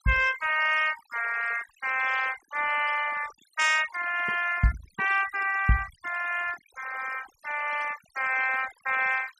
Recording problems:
noise reduction artefacts; signal-to-artefact ratio 12 dB

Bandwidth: 14.5 kHz